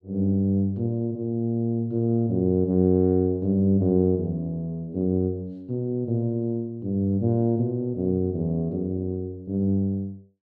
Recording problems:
none

